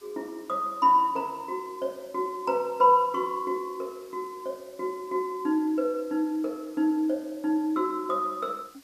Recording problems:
hiss; slope -1 dB per octave, SNR 27 dB

